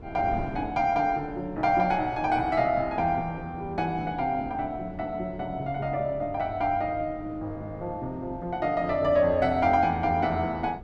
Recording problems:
wind noise; below 340 Hz, SNR 16 dB

